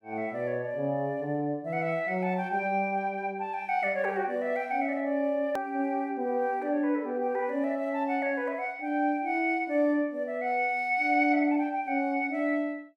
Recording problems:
hard cut with a click; at 5.5 s

